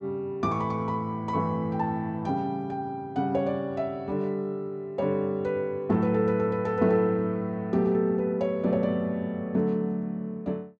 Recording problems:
none

